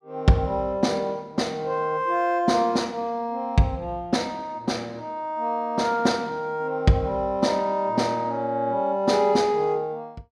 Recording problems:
none

